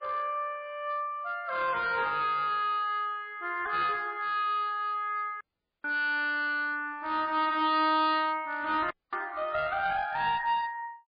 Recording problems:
lossy compression; MP3, log-spectral distance 2 dB, nothing above 4.1 kHz
distortion; hard clipping, uneven, signal-to-distortion ratio 10 dB
audio cutting out; at 5.5 s and at 9 s

